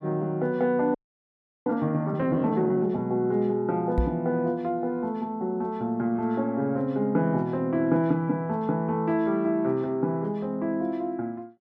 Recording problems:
frozen audio; at 1 s for 0.5 s
knock on the microphone; at 4 s; peak +4 dB vs average level

